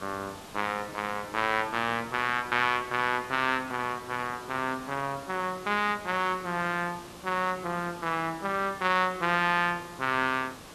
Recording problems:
hiss; slope -4 dB per octave, SNR 16 dB

